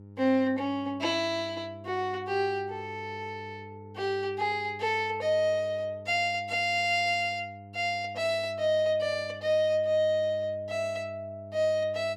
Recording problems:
electrical hum; 50 Hz, harmonics up to 500 Hz, SNR 19 dB

